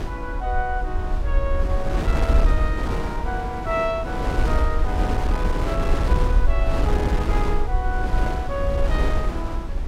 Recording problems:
rumble; below 58 Hz, SNR -3 dB
wind noise; below 710 Hz, SNR 1 dB

